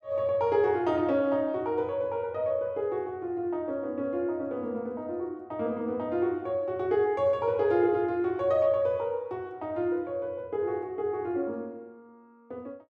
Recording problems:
none

